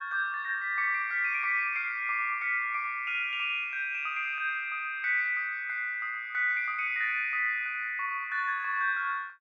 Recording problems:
none

